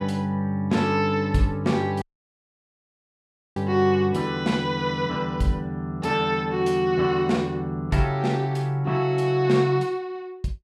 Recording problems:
dropout; at 2 s for 1.5 s

